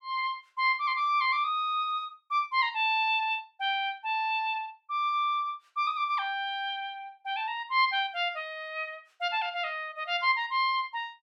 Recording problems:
none

